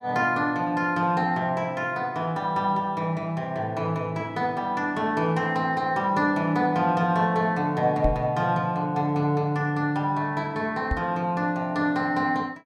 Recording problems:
knock on the microphone; at 8 s and at 11 s; peak +2 dB vs average level

